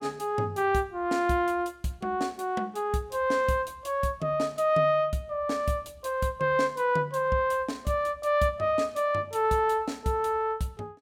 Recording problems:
none

